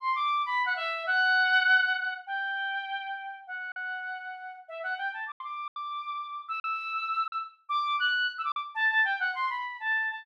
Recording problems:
packet loss; 3% of the sound replaced, filled with silence

